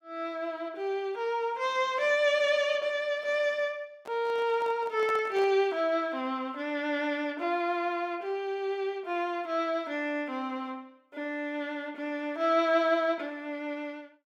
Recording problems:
microphone handling noise; from 4 to 5.5 s; peak -7 dB vs average level

